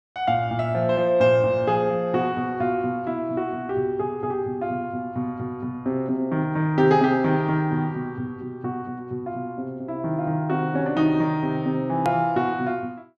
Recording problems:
hard cut with a click; at 12 s

